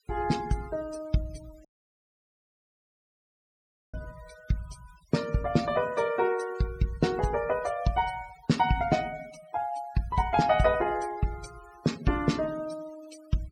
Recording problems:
denoising artefacts; signal-to-artefact ratio 19 dB
dropout; at 1.5 s for 2.5 s

